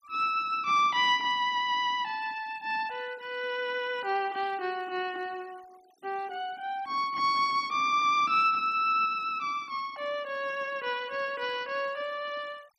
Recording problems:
noise reduction artefacts; signal-to-artefact ratio 26 dB

